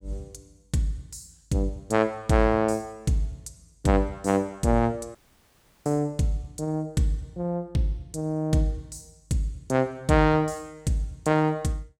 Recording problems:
audio cutting out; at 5 s for 0.5 s

